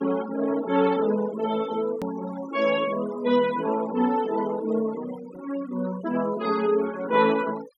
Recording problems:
denoising artefacts; signal-to-artefact ratio 16 dB
hard cut with a click; at 2 s

